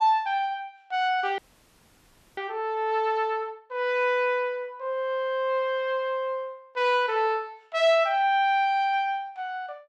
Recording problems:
frozen audio; at 1.5 s for 1 s

